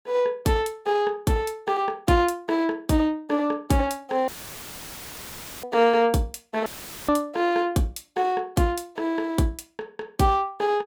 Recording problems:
dropout; at 4.5 s for 1.5 s and at 6.5 s; filled with static

